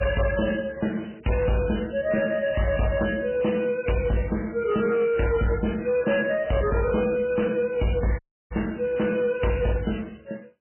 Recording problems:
lossy compression; MP3, log-spectral distance 5 dB, nothing above 3 kHz
distortion; hard clipping, signal-to-distortion ratio 10 dB
audio cutting out; at 8 s

